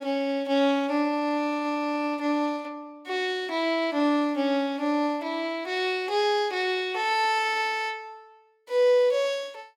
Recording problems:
none

